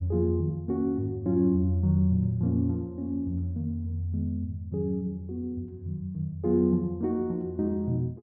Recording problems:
none

